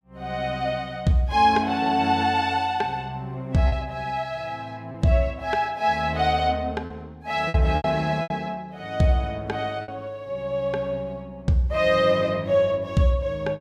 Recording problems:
packet loss; 3% of the sound replaced, filled with repeated pitch periods

